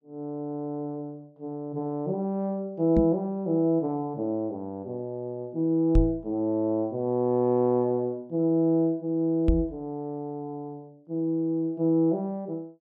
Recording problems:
knock on the microphone; at 3 s, at 6 s and at 9.5 s; peak +7 dB vs average level

